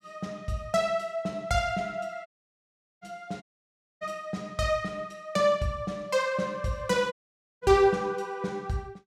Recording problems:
dropout; at 2.5 s for 1 s, at 3.5 s for 0.5 s and at 7 s

